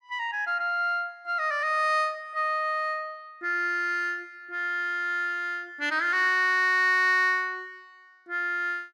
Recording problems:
none

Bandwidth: 14 kHz